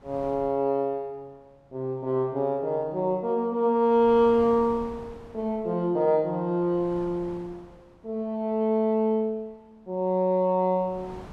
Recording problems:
wind noise; below 860 Hz, SNR 22 dB

